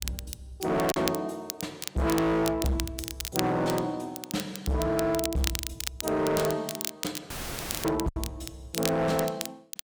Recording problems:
distorted audio; hard clipping, uneven, signal-to-distortion ratio 7 dB
crackle; vinyl, SNR 7 dB
packet loss; 1.5% of the sound replaced, filled with silence
audio cutting out; at 7.5 s for 0.5 s; filled with static

